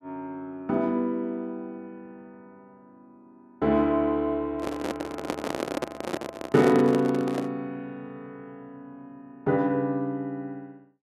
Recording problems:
microphone handling noise; from 4.5 to 7.5 s; peak +1 dB vs average level

